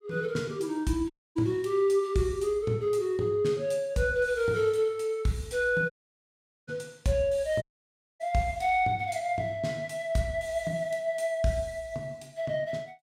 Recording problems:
dropout; at 1 s, at 6 s for 1 s and at 7.5 s for 0.5 s

